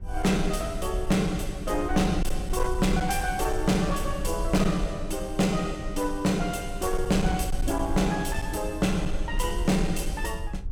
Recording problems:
distortion; hard clipping, uneven, signal-to-distortion ratio 12 dB
rumble; below 58 Hz, SNR 7 dB

